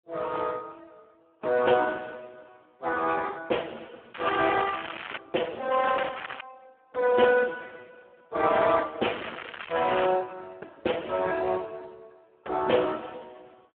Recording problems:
phone line; 260 Hz to 2.6 kHz, Speex
crackle; from 4 to 5 s, at 5.5 s and from 9 to 10 s; loose cable, SNR 11 dB

